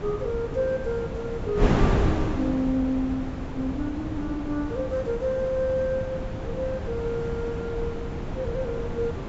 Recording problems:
treble missing; nothing above 8 kHz
wind on the microphone; below 410 Hz, SNR 2 dB

